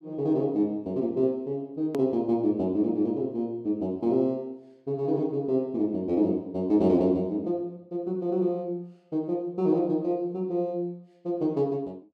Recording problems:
hard cut with a click; at 2 s

